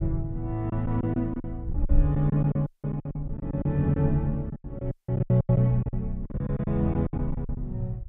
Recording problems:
low-pass filter; nothing above 4 kHz
low-frequency rumble; below 60 Hz, strongest tone 28 Hz, SNR 9 dB
packet loss; 15% of the sound replaced, filled with silence
dropout; at 2.5 s and at 5 s

